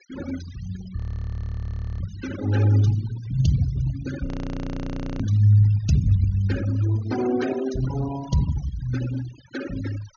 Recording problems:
treble cut off; nothing above 6.6 kHz
denoising artefacts; signal-to-artefact ratio 14 dB
audio freezing; at 1 s for 1 s and at 4.5 s for 1 s

